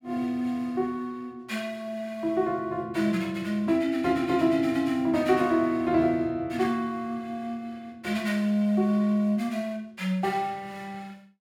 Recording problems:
none

